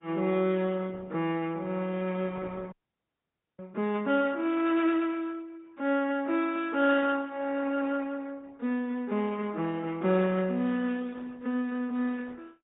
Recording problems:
treble missing; nothing above 3.7 kHz
lossy codec; Opus, log-spectral distance 3 dB
frozen audio; at 2.5 s for 1 s

